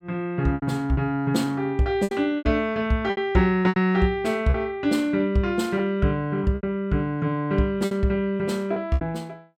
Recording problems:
packet loss; 8% of the sound replaced, filled with repeated pitch periods

